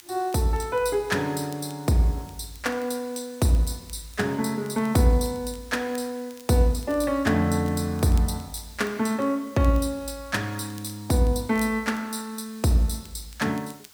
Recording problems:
background hiss; slope +1 dB per octave, SNR 24 dB
crackle; vinyl, SNR 27 dB

